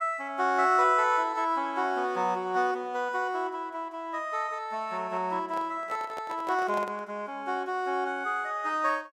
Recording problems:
handling noise; from 5.5 to 7 s; peak -6 dB vs average level

